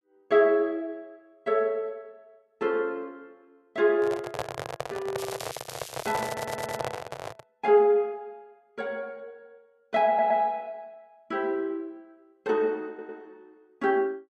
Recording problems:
microphone handling noise; from 4 to 7.5 s; peak 0 dB vs average level
crackling; from 5 to 7 s; loose cable, SNR 15 dB
stutter; at 6.5 s, at 10 s and at 13 s

